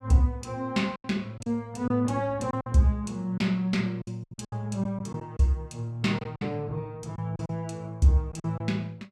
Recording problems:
packet loss; 8% of the sound replaced, filled with silence

